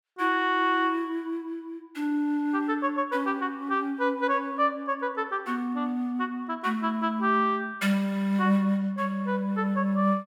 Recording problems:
none

